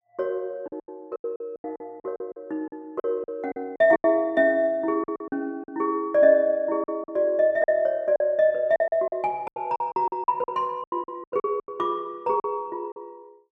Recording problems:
lost packets; 14% of the sound replaced, filled with silence

